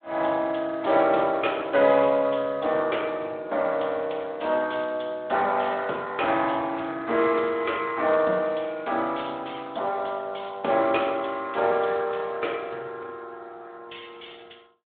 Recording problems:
phone line; 300 Hz to 3.6 kHz, Speex

